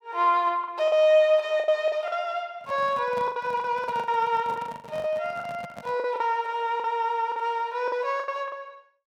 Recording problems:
lost packets; 12% of the sound replaced, filled with the last packet
microphone handling noise; from 2.5 to 6 s; peak -10 dB vs average level

